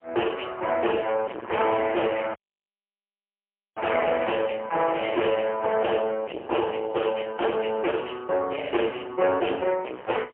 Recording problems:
phone line; 280 Hz to 2.9 kHz, AMR-NB, then MP3
distorted audio; hard clipping, uneven, signal-to-distortion ratio 6 dB
dropout; at 2.5 s for 1.5 s

